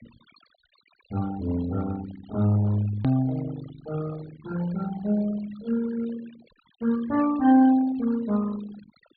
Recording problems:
low-pass filter; nothing above 4.6 kHz
denoising artefacts; signal-to-artefact ratio 17 dB
hard cut with a click; at 3 s

